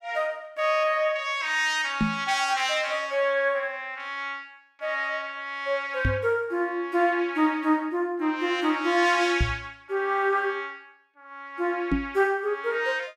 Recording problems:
microphone thump; 4 times, first at 2 s; peak +4 dB vs average level

